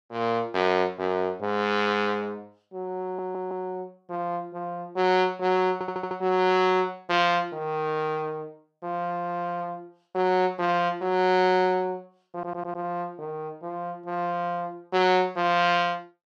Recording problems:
stutter; at 3 s, at 5.5 s and at 12 s

